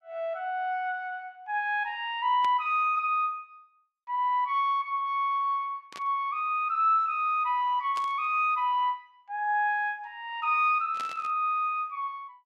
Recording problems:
burst of static; 4 times, first at 2.5 s; peak -9 dB vs average level

